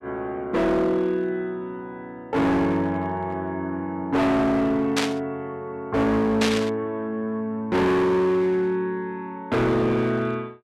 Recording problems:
distortion; hard clipping, signal-to-distortion ratio 7 dB
burst of static; at 5 s and at 6.5 s; peak +3 dB vs average level

